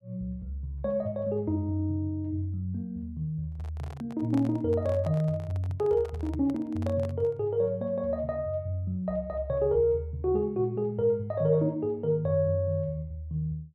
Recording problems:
handling noise; from 3.5 to 7.5 s; peak -9 dB vs average level

